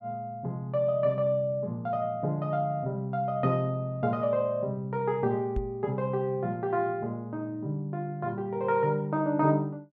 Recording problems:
knock on the microphone; at 5.5 s; peak 0 dB vs average level

